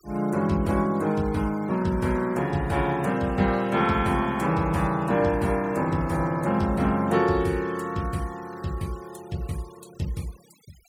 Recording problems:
noise reduction artefacts; signal-to-artefact ratio 24 dB

